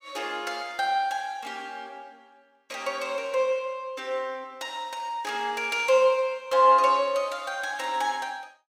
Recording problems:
none

